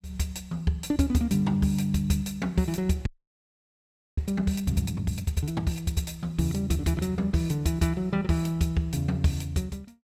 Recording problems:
audio freezing; at 3 s for 1 s

